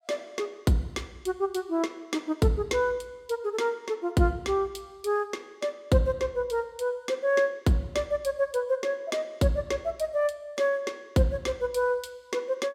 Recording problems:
none

